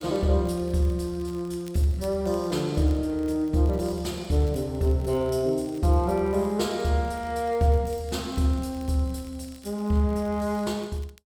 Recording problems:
crackling; vinyl, SNR 28 dB

